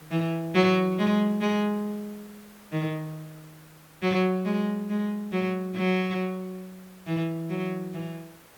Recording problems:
background hiss; slope -3 dB per octave, SNR 25 dB

